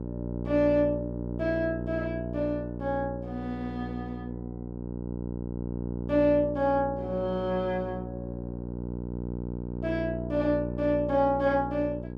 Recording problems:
electrical hum; 60 Hz, harmonics up to 1 kHz, SNR 7 dB

